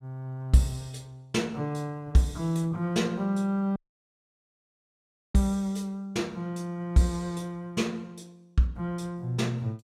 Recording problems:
audio cutting out; at 4 s for 1.5 s

